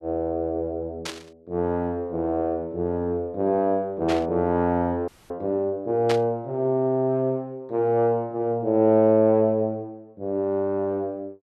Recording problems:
static burst; at 1 s, at 4 s and at 6 s; peak -2 dB vs average level
frozen audio; at 5 s

